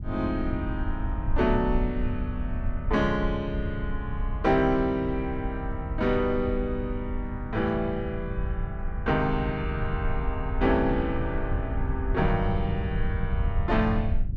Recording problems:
rumble; below 84 Hz, SNR 4 dB

